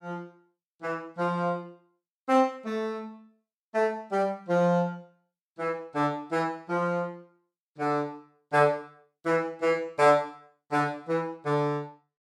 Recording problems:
none

